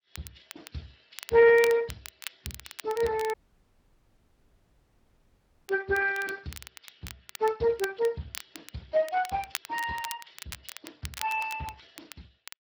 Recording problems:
codec artefacts; Vorbis, then Speex, log-spectral distance 6 dB
crackling; vinyl, SNR 16 dB
dropout; at 3.5 s for 2.5 s

